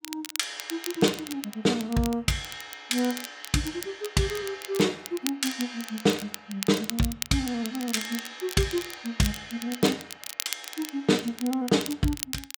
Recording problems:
crackle; vinyl, SNR 10 dB

